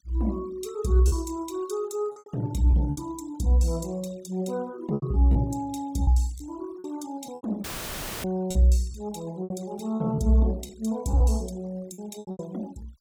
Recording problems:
denoising artefacts; signal-to-artefact ratio 23 dB
packet loss; 8% of the sound replaced, filled with repeated pitch periods
audio cutting out; at 7.5 s for 0.5 s; filled with static

